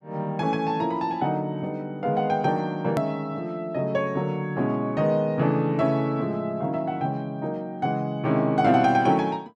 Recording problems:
click at an edit; at 3 s

